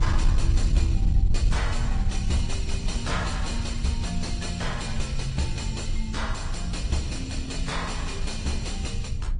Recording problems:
codec artefacts; AAC, then MP3, log-spectral distance 3 dB, nothing above 9.5 kHz
distortion; soft clipping, signal-to-distortion ratio 9 dB
rumble; below 74 Hz, SNR -2 dB
wind on the microphone; below 150 Hz, SNR 15 dB

